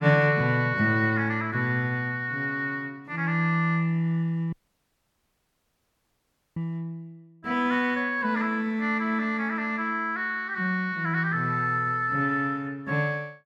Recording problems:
dropout; at 4.5 s for 2 s

